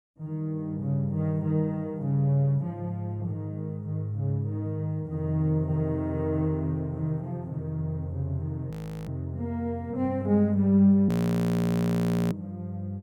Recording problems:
audio freezing; at 8.5 s and at 11 s for 1 s

